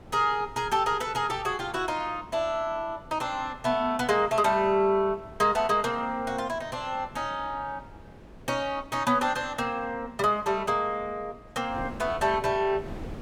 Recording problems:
wind on the microphone; below 470 Hz, SNR 19 dB

